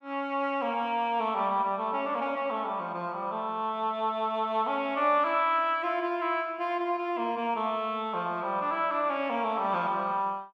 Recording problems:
none

